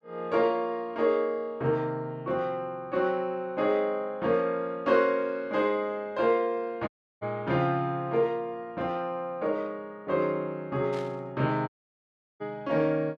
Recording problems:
audio cutting out; at 7 s and at 12 s for 0.5 s
static burst; at 11 s; peak -13 dB vs average level

